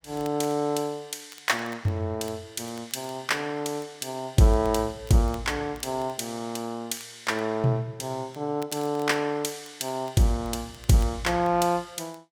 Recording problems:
crackling; vinyl, SNR 25 dB

